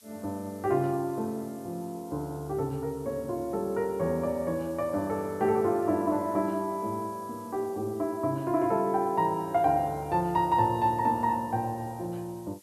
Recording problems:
background hiss; slope +4 dB per octave, SNR 25 dB

